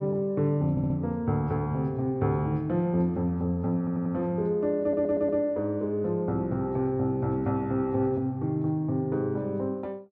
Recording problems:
stutter; at 0.5 s, at 4 s and at 5 s

